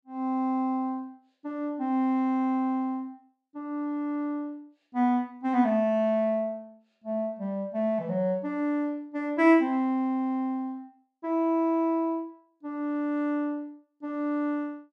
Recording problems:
none

